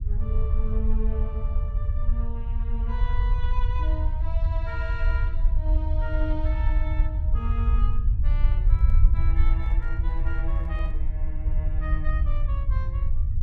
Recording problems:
rumble; below 62 Hz, SNR -12 dB
microphone handling noise; from 8.5 to 11 s; peak -10 dB vs average level

